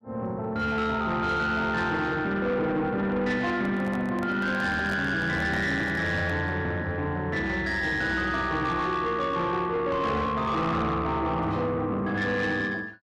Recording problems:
distortion; soft clipping, signal-to-distortion ratio 11 dB
microphone handling noise; from 3.5 to 6.5 s; peak -6 dB vs average level

